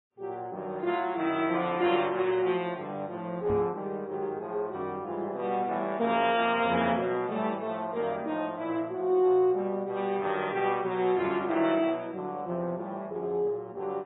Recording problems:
lossy codec; MP3, then AAC, log-spectral distance 2 dB, nothing above 3.7 kHz
microphone thump; at 3.5 s; peak -3 dB vs average level

